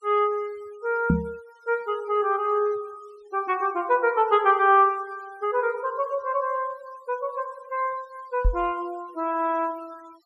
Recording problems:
noise reduction artefacts; signal-to-artefact ratio 27 dB
microphone thump; at 1 s and at 8.5 s; peak +6 dB vs average level

